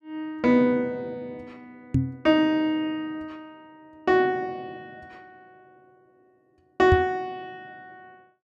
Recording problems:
microphone bump; at 2 s and at 7 s; peak +5 dB vs average level

